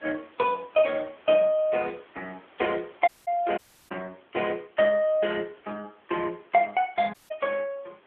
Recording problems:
phone line; 260 Hz to 3.4 kHz, AMR-NB
background hiss; SNR 30 dB
audio cutting out; at 3 s, at 3.5 s and at 7 s

